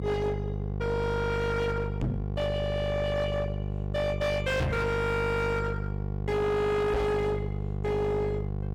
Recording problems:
distorted audio; hard clipping, signal-to-distortion ratio 6 dB
hum; 50 Hz, harmonics up to 1.4 kHz, SNR 3 dB
microphone thump; at 2 s, at 4.5 s and at 7 s; peak +4 dB vs average level

